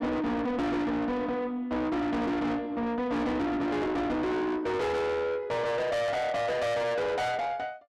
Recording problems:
distortion; soft clipping, signal-to-distortion ratio 6 dB

